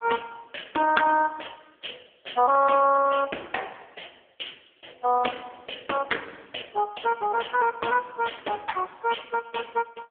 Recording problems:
telephone audio; 280 Hz to 3.5 kHz, AMR-NB

